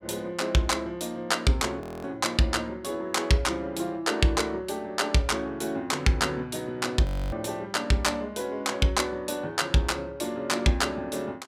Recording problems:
frozen audio; at 2 s and at 7 s

